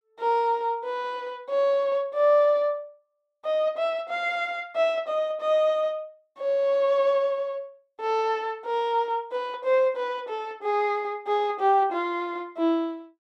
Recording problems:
none

